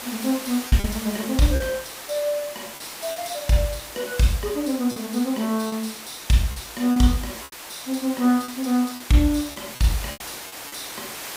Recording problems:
hiss; slope -1 dB per octave, SNR 11 dB
packet loss; 6% of the sound replaced, filled with repeated pitch periods

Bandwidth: 15.5 kHz